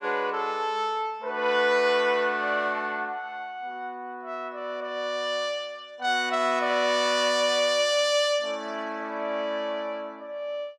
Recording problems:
none

